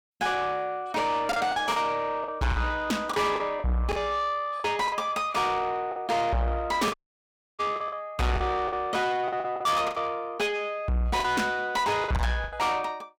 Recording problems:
distorted audio; soft clipping, signal-to-distortion ratio 6 dB
packet loss; 9% of the sound replaced, filled with the last packet
audio cutting out; at 7 s for 0.5 s

